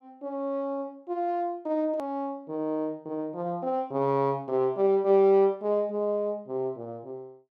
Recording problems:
click at an edit; at 2 s

